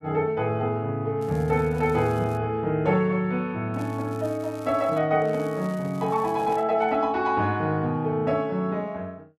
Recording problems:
crackling; from 1 to 2.5 s, from 3.5 to 5 s and from 5.5 to 6.5 s; loose cable, SNR 27 dB
microphone handling noise; from 4.5 to 7 s; peak -11 dB vs average level

